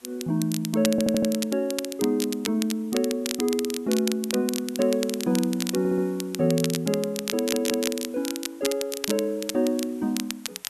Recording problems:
hiss; slope -1 dB per octave, SNR 27 dB
crackle; vinyl, SNR 7 dB
stutter; at 1 s, at 6 s and at 7.5 s

